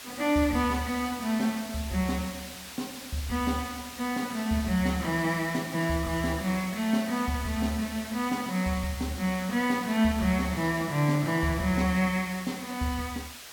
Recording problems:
background hiss; slope +1 dB per octave, SNR 13 dB

